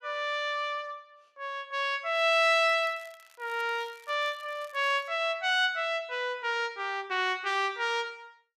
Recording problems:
crackling; from 2 to 5 s; loose cable, SNR 28 dB

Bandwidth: 14.5 kHz